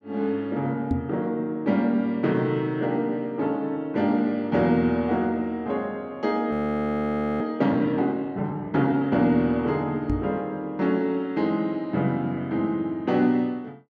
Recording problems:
microphone thump; at 1 s and at 10 s; peak +3 dB vs average level
audio freezing; at 6.5 s for 1 s

